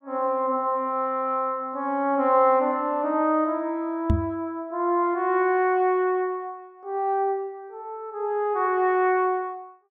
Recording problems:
knock on the microphone; at 4 s; peak +6 dB vs average level

